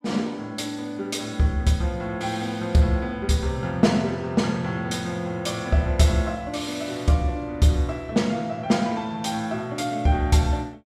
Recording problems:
none

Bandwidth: 14.5 kHz